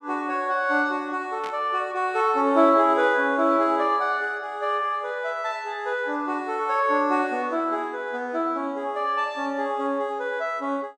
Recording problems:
static burst; at 1.5 s; peak -11 dB vs average level

